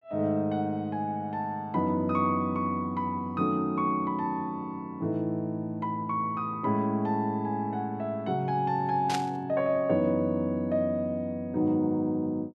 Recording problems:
static burst; at 9 s; peak -1 dB vs average level

